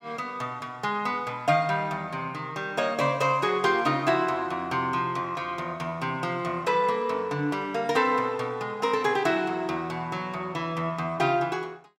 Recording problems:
none

